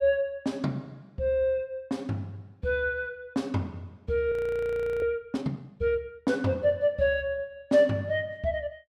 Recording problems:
frozen audio; at 4.5 s for 0.5 s

